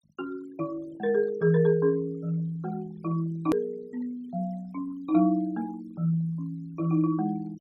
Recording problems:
denoising artefacts; signal-to-artefact ratio 24 dB
hard cut with a click; at 3.5 s

